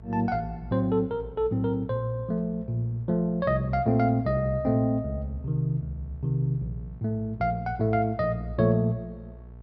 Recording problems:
electrical hum; 60 Hz, harmonics up to 660 Hz, SNR 19 dB

